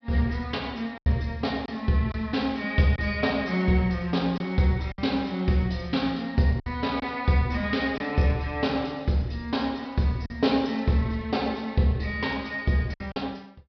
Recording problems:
treble cut off; nothing above 5.5 kHz
packet loss; 3% of the sound replaced, filled with silence

